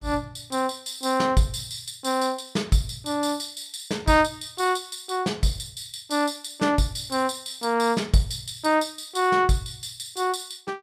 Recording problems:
none

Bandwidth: 14.5 kHz